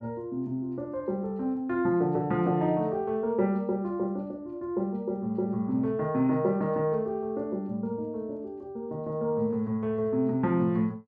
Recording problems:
none

